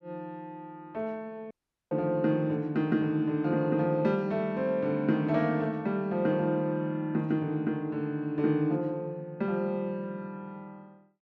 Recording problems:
dropout; at 1.5 s

